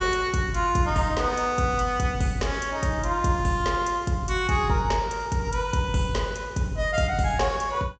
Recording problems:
treble cut off; nothing above 8 kHz

